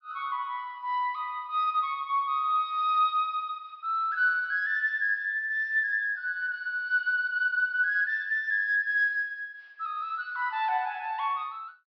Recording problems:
treble missing; nothing above 5.5 kHz

